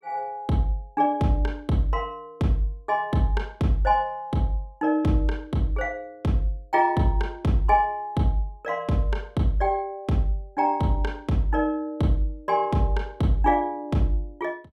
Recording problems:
none

